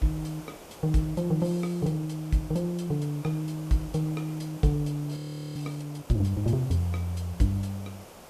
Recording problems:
background hiss; SNR 17 dB
frozen audio; at 5 s

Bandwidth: 14.5 kHz